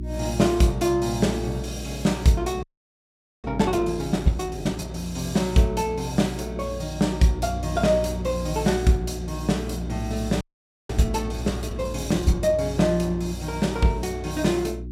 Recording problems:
hum; 60 Hz, harmonics up to 360 Hz, SNR 10 dB
audio freezing; at 2.5 s for 1 s and at 10 s

